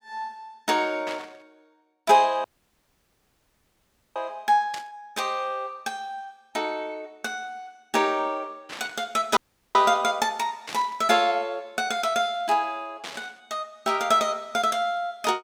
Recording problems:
static burst; 5 times, first at 1 s; peak -6 dB vs average level
dropout; at 2.5 s for 1.5 s and at 9.5 s

